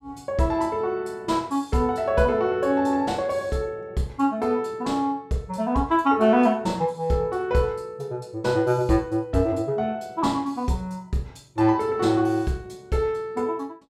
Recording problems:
none

